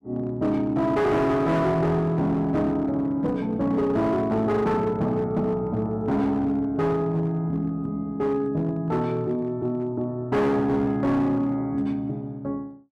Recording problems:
distortion; hard clipping, signal-to-distortion ratio 10 dB

